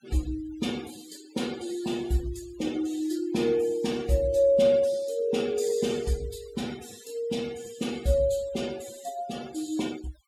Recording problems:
denoising artefacts; signal-to-artefact ratio 20 dB

